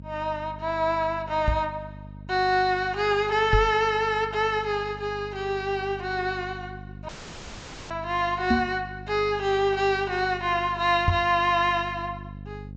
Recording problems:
treble cut off; nothing above 8 kHz
hum; 50 Hz, harmonics up to 500 Hz, SNR 16 dB
knock on the microphone; 4 times, first at 1.5 s; peak +5 dB vs average level
audio cutting out; at 7 s for 1 s

